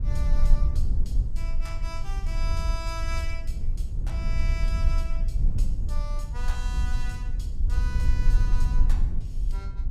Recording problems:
rumble; below 52 Hz, SNR -12 dB

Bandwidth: 15.5 kHz